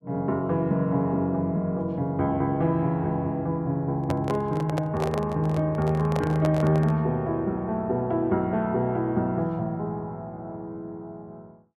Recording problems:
handling noise; from 4 to 7 s; peak -1 dB vs average level

